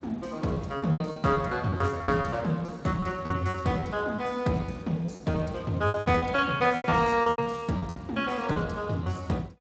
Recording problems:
codec artefacts; Speex, log-spectral distance 5 dB, nothing above 7.3 kHz
lost packets; 14% of the sound replaced, filled with repeated pitch periods

